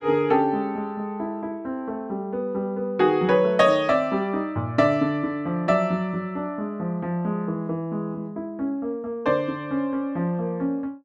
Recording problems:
none

